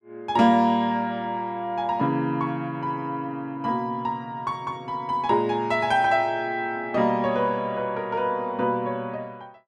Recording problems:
none

